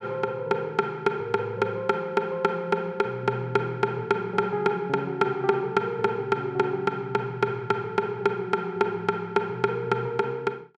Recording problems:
none

